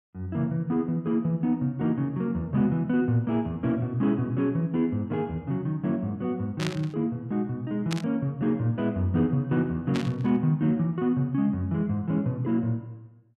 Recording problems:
static burst; at 6.5 s, at 8 s and at 10 s; peak -2 dB vs average level

